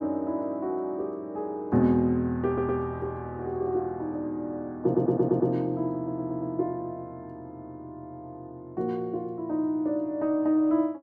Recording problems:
stutter; at 2.5 s, at 5 s and at 6 s

